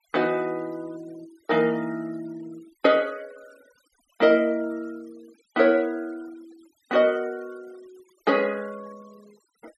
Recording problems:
denoising artefacts; signal-to-artefact ratio 28 dB

